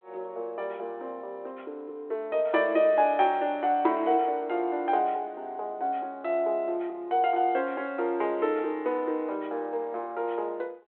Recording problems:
telephone audio; 280 Hz to 3.6 kHz, G.726

